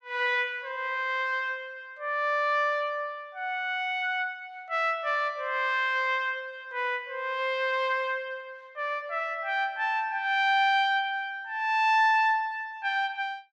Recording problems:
none

